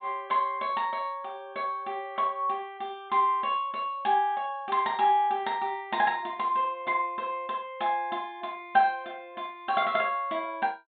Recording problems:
treble missing; nothing above 4 kHz

